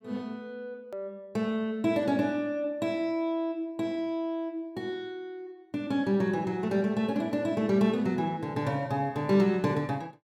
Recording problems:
edit click; at 1 s

